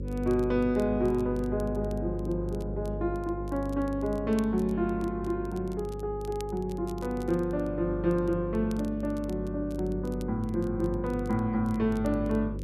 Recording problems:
hum; 50 Hz, harmonics up to 550 Hz, SNR 8 dB
crackle; vinyl, SNR 26 dB

